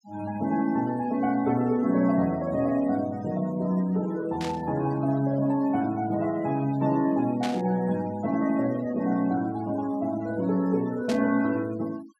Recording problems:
noise reduction artefacts; signal-to-artefact ratio 22 dB
burst of static; at 4.5 s, at 7.5 s and at 11 s; peak -5 dB vs average level

